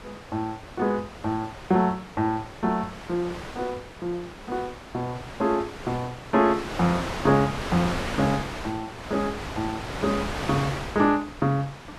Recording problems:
wind on the microphone; below 2.1 kHz, SNR 8 dB

